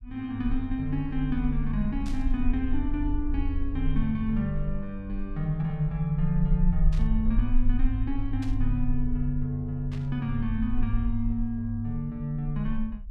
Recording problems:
rumble; below 40 Hz, strongest tone 18 Hz, SNR 4 dB
burst of static; 4 times, first at 2 s; peak -11 dB vs average level

